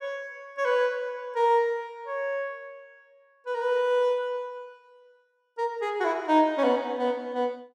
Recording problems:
none

